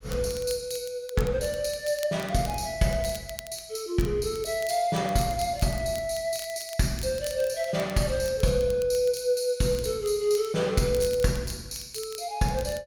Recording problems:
crackling; vinyl, SNR 18 dB

